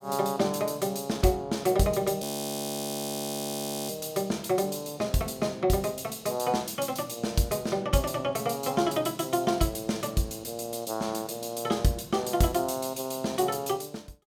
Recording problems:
frozen audio; at 2 s for 1.5 s

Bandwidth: 17 kHz